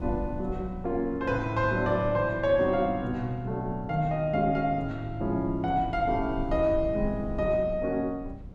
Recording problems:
wind noise; below 130 Hz, SNR 13 dB

